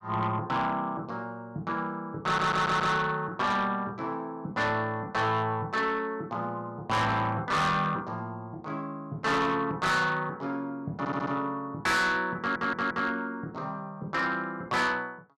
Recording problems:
distorted audio; soft clipping, signal-to-distortion ratio 7 dB
stutter; at 2.5 s, at 11 s and at 12 s

